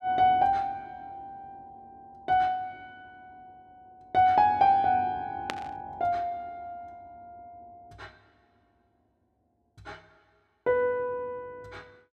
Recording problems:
burst of static; at 5.5 s; peak -2 dB vs average level

